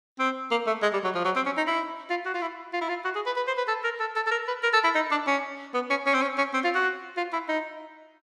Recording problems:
none

